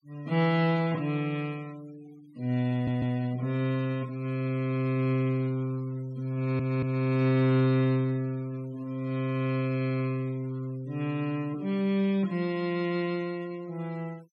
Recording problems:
noise reduction artefacts; signal-to-artefact ratio 25 dB
stutter; at 2.5 s and at 6.5 s

